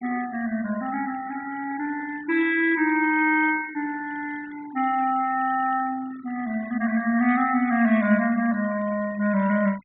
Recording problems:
low-pass filter; nothing above 3.6 kHz
denoising artefacts; signal-to-artefact ratio 19 dB

